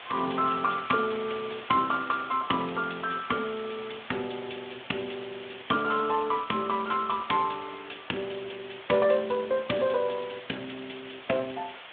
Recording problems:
telephone audio; 220 Hz to 3.4 kHz, Speex
background hiss; SNR 14 dB
crackling; from 2.5 to 4 s and from 4.5 to 7 s; loose cable, SNR 22 dB

